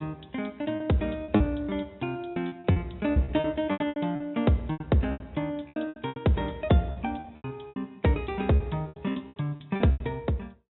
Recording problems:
treble missing; nothing above 3.9 kHz
packet loss; 16% of the sound replaced, filled with repeated pitch periods

